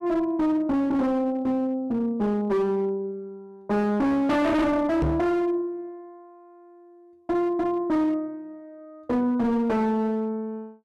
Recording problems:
distorted audio; hard clipping, uneven, signal-to-distortion ratio 7 dB
microphone thump; at 5 s; peak +2 dB vs average level

